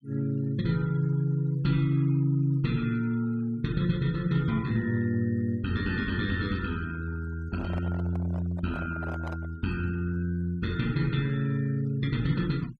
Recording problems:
noise reduction artefacts; signal-to-artefact ratio 24 dB
handling noise; from 7.5 to 9.5 s; peak -9 dB vs average level

